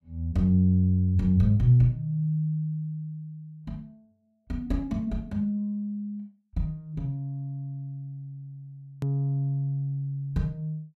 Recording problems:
hard cut with a click; at 9 s

